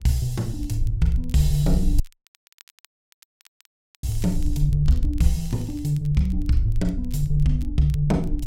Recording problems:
wind noise; below 60 Hz, SNR 5 dB
crackling; vinyl, SNR 29 dB
dropout; at 2 s for 2 s

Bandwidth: 16 kHz